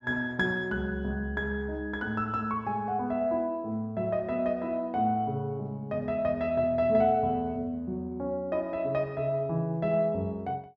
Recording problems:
none

